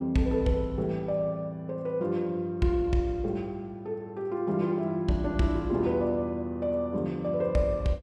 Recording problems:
none

